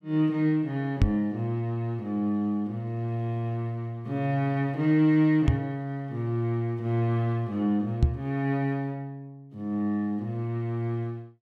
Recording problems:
microphone thump; at 1 s, at 5.5 s and at 8 s; peak +9 dB vs average level

